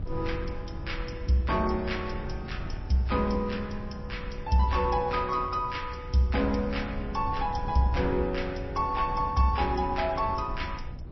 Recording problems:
codec artefacts; MP3, log-spectral distance 3 dB, nothing above 5.7 kHz
wind on the microphone; below 110 Hz, SNR 10 dB

